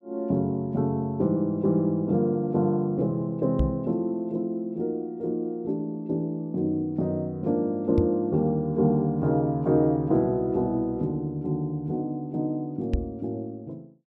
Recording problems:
microphone bump; at 3.5 s, at 8 s and at 13 s; peak +4 dB vs average level

